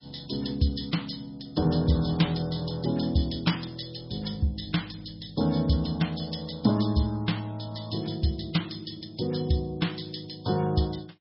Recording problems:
lossy compression; MP3, log-spectral distance 9 dB, nothing above 5.3 kHz

